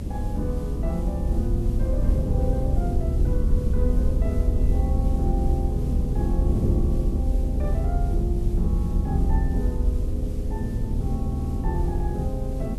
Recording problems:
electrical hum; 50 Hz, harmonics up to 350 Hz, SNR 25 dB
background hiss; slope -2 dB per octave, SNR 20 dB
low-frequency rumble; below 70 Hz, SNR -5 dB
wind noise; below 220 Hz, SNR 0 dB
audio stuttering; at 11 s

